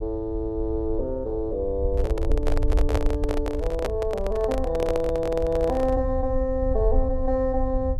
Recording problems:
rumble; below 64 Hz, SNR 4 dB
microphone handling noise; from 2 to 6 s; peak +3 dB vs average level

